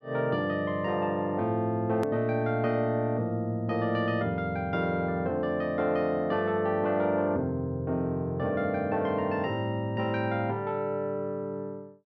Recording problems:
hard cut with a click; at 2 s

